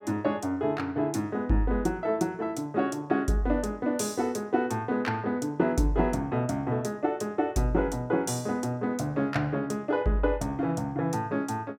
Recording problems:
none

